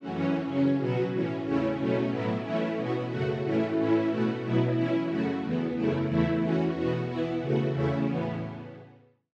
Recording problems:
none

